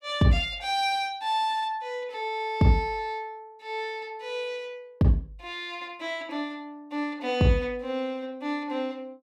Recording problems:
none

